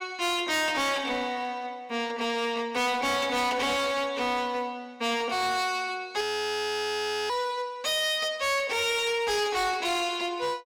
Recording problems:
distortion; hard clipping, signal-to-distortion ratio 7 dB
frozen audio; at 6 s for 1 s

